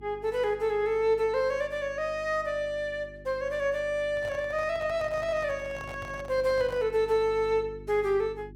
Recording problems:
hum; 50 Hz, harmonics up to 400 Hz, SNR 20 dB
handling noise; from 4 to 7 s; peak -11 dB vs average level

